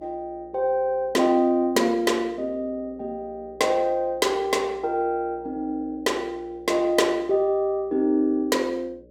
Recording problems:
hum; 60 Hz, harmonics up to 600 Hz, SNR 26 dB

